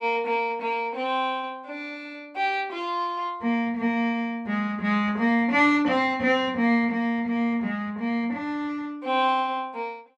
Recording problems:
none

